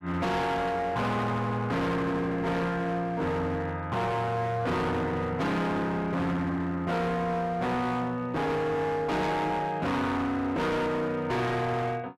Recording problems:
distorted audio; hard clipping, signal-to-distortion ratio 7 dB

